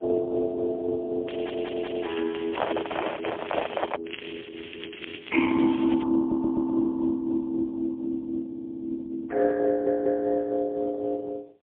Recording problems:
phone line; 900 Hz to 2.5 kHz, AMR-NB, then MP3
crackle; from 1.5 to 4 s and from 4 to 6 s; loose cable, SNR 13 dB
audio stuttering; 4 times, first at 1.5 s
microphone handling noise; from 2.5 to 4 s; peak +4 dB vs average level

